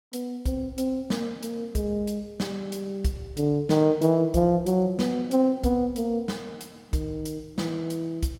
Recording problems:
none

